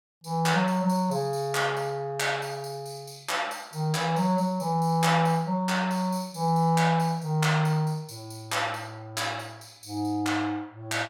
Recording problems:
none

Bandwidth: 17 kHz